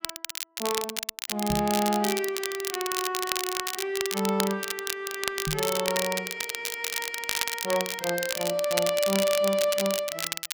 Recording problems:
crackling; vinyl, SNR 2 dB
knock on the microphone; at 1.5 s and at 5.5 s; peak 0 dB vs average level

